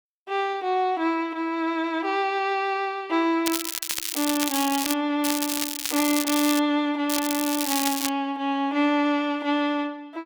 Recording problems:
crackling; from 3.5 to 5 s, from 5 to 6.5 s and from 7 to 8 s; loose cable, SNR 3 dB

